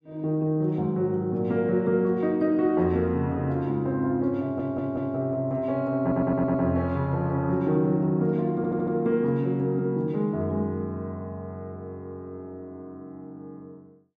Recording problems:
audio stuttering; at 4.5 s, at 6 s and at 8.5 s

